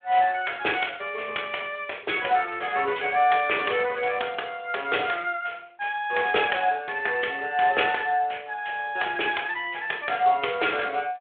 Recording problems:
phone line; 320 Hz to 3.5 kHz, Speex

